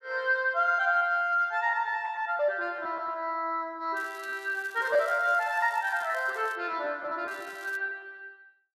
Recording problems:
lost packets; 8% of the sound replaced, filled with repeated pitch periods
crackling; from 4 to 6.5 s and at 7.5 s; loose cable, SNR 24 dB

